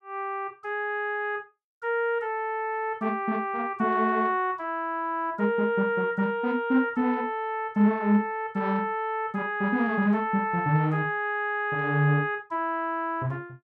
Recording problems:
none

